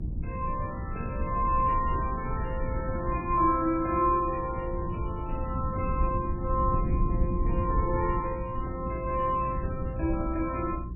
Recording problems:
codec artefacts; MP3, log-spectral distance 2 dB, nothing above 2.4 kHz
hum; 60 Hz, harmonics up to 360 Hz, SNR 12 dB
rumble; below 110 Hz, SNR 4 dB

